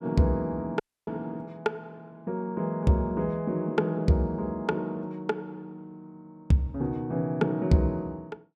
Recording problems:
audio cutting out; at 1 s

